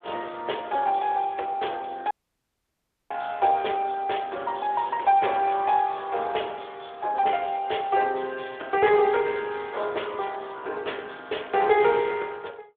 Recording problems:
telephone audio; 340 Hz to 3.4 kHz, Speex
audio cutting out; at 2 s for 1 s

